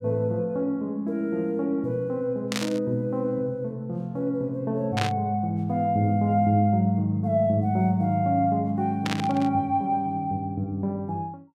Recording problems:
burst of static; at 2.5 s, at 5 s and at 9 s; peak +1 dB vs average level

